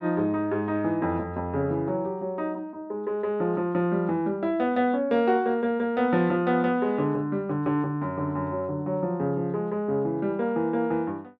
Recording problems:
none

